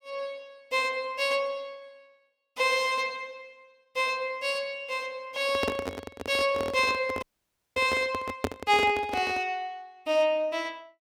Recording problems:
handling noise; from 5.5 to 9.5 s; peak +4 dB vs average level
dropout; at 7 s for 0.5 s

